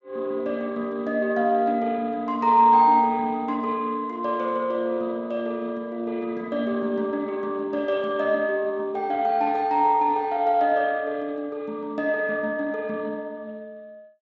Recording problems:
lossy codec; Speex, log-spectral distance 2 dB

